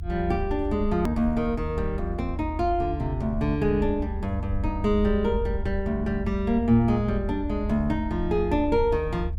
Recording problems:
rumble; below 78 Hz, SNR 7 dB
edit click; at 1 s

